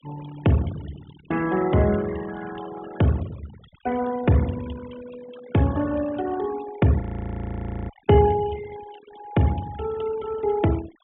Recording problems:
treble missing; nothing above 3.4 kHz
noise reduction artefacts; signal-to-artefact ratio 18 dB
frozen audio; at 7 s for 1 s

